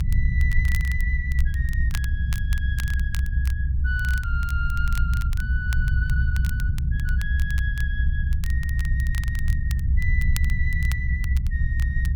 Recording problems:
rumble; below 78 Hz, SNR -9 dB
crackling; vinyl, SNR 10 dB

